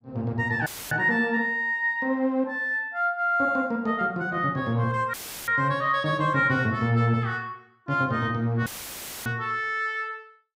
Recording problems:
dropout; at 0.5 s, at 5 s and at 8.5 s for 0.5 s; filled with static

